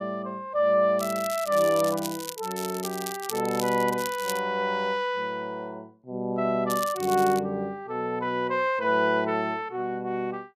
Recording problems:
crackling; from 1 to 4.5 s and at 6.5 s; loose cable, SNR 11 dB

